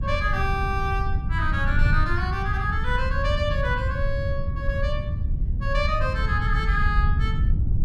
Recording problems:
wind on the microphone; below 94 Hz, SNR -2 dB

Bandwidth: 14.5 kHz